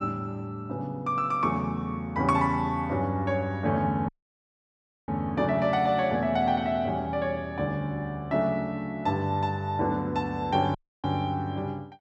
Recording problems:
dropout; at 4 s for 1 s and at 11 s

